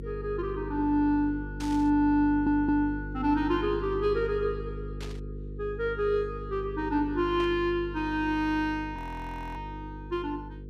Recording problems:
electrical hum; 50 Hz, harmonics up to 500 Hz, SNR 11 dB
static burst; at 1.5 s, at 5 s and at 7.5 s; peak -10 dB vs average level
stutter; at 2.5 s
audio freezing; at 9 s for 0.5 s

